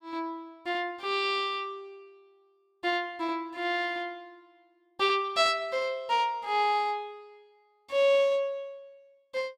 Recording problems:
none

